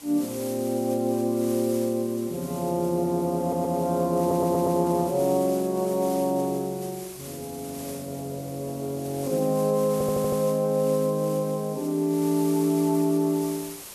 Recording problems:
hiss; slope -1 dB per octave, SNR 15 dB
stutter; at 3.5 s, at 4 s and at 10 s

